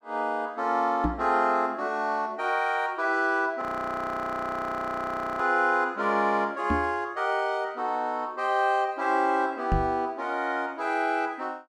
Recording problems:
microphone bump; at 1 s, at 6.5 s and at 9.5 s; peak +3 dB vs average level
frozen audio; at 3.5 s for 2 s

